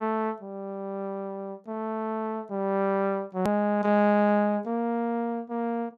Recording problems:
edit click; at 3.5 s

